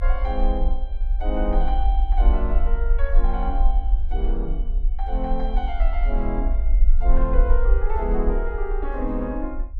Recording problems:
rumble; below 46 Hz, SNR -5 dB

